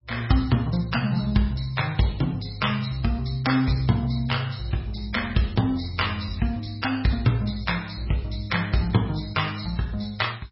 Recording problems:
lossy codec; MP3, log-spectral distance 4 dB, nothing above 5.3 kHz

